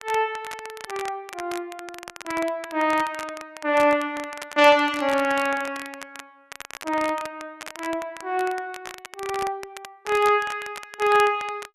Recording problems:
crackling; vinyl, SNR 15 dB

